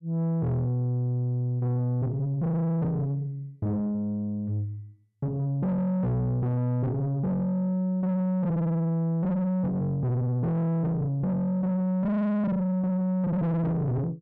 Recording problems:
distorted audio; soft clipping, signal-to-distortion ratio 6 dB

